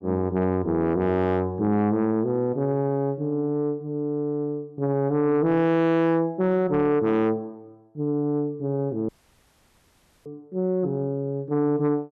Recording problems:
distorted audio; soft clipping, signal-to-distortion ratio 11 dB
audio cutting out; at 9 s for 1 s

